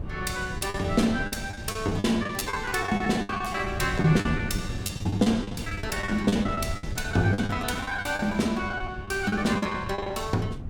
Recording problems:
wind noise; below 170 Hz, SNR 10 dB
packet loss; 18% of the sound replaced, filled with the last packet

